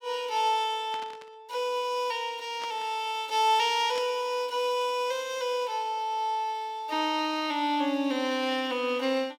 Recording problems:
burst of static; at 1 s, at 2.5 s and at 4 s; peak -8 dB vs average level

